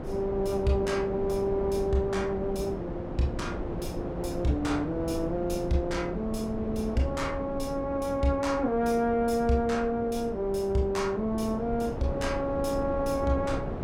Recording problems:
wind noise; below 460 Hz, SNR 8 dB

